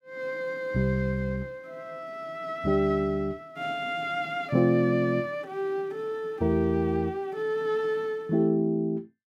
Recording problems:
none

